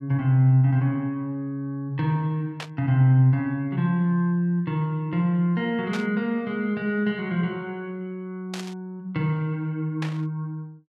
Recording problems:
burst of static; 4 times, first at 2.5 s; peak -6 dB vs average level

